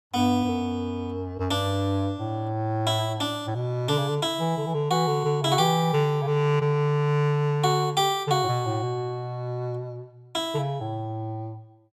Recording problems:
none

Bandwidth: 15.5 kHz